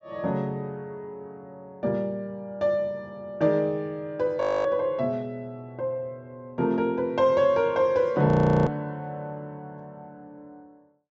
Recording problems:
treble missing; nothing above 7.5 kHz
audio freezing; at 4.5 s and at 8.5 s

